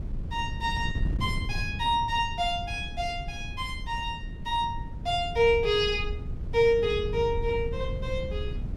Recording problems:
wind noise; below 120 Hz, SNR 7 dB

